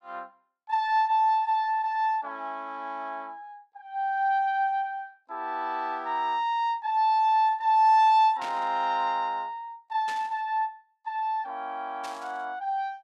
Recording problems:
burst of static; at 8.5 s, at 10 s and at 12 s; peak -10 dB vs average level

